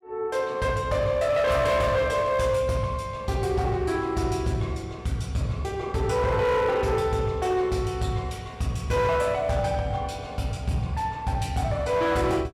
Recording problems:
distortion; hard clipping, signal-to-distortion ratio 11 dB

